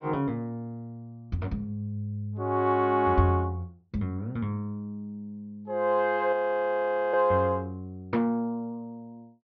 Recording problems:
low-pass filter; nothing above 6.1 kHz
frozen audio; at 6.5 s for 1 s

